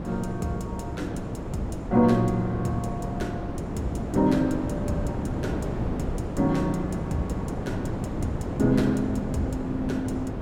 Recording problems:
wind on the microphone; below 400 Hz, SNR 4 dB

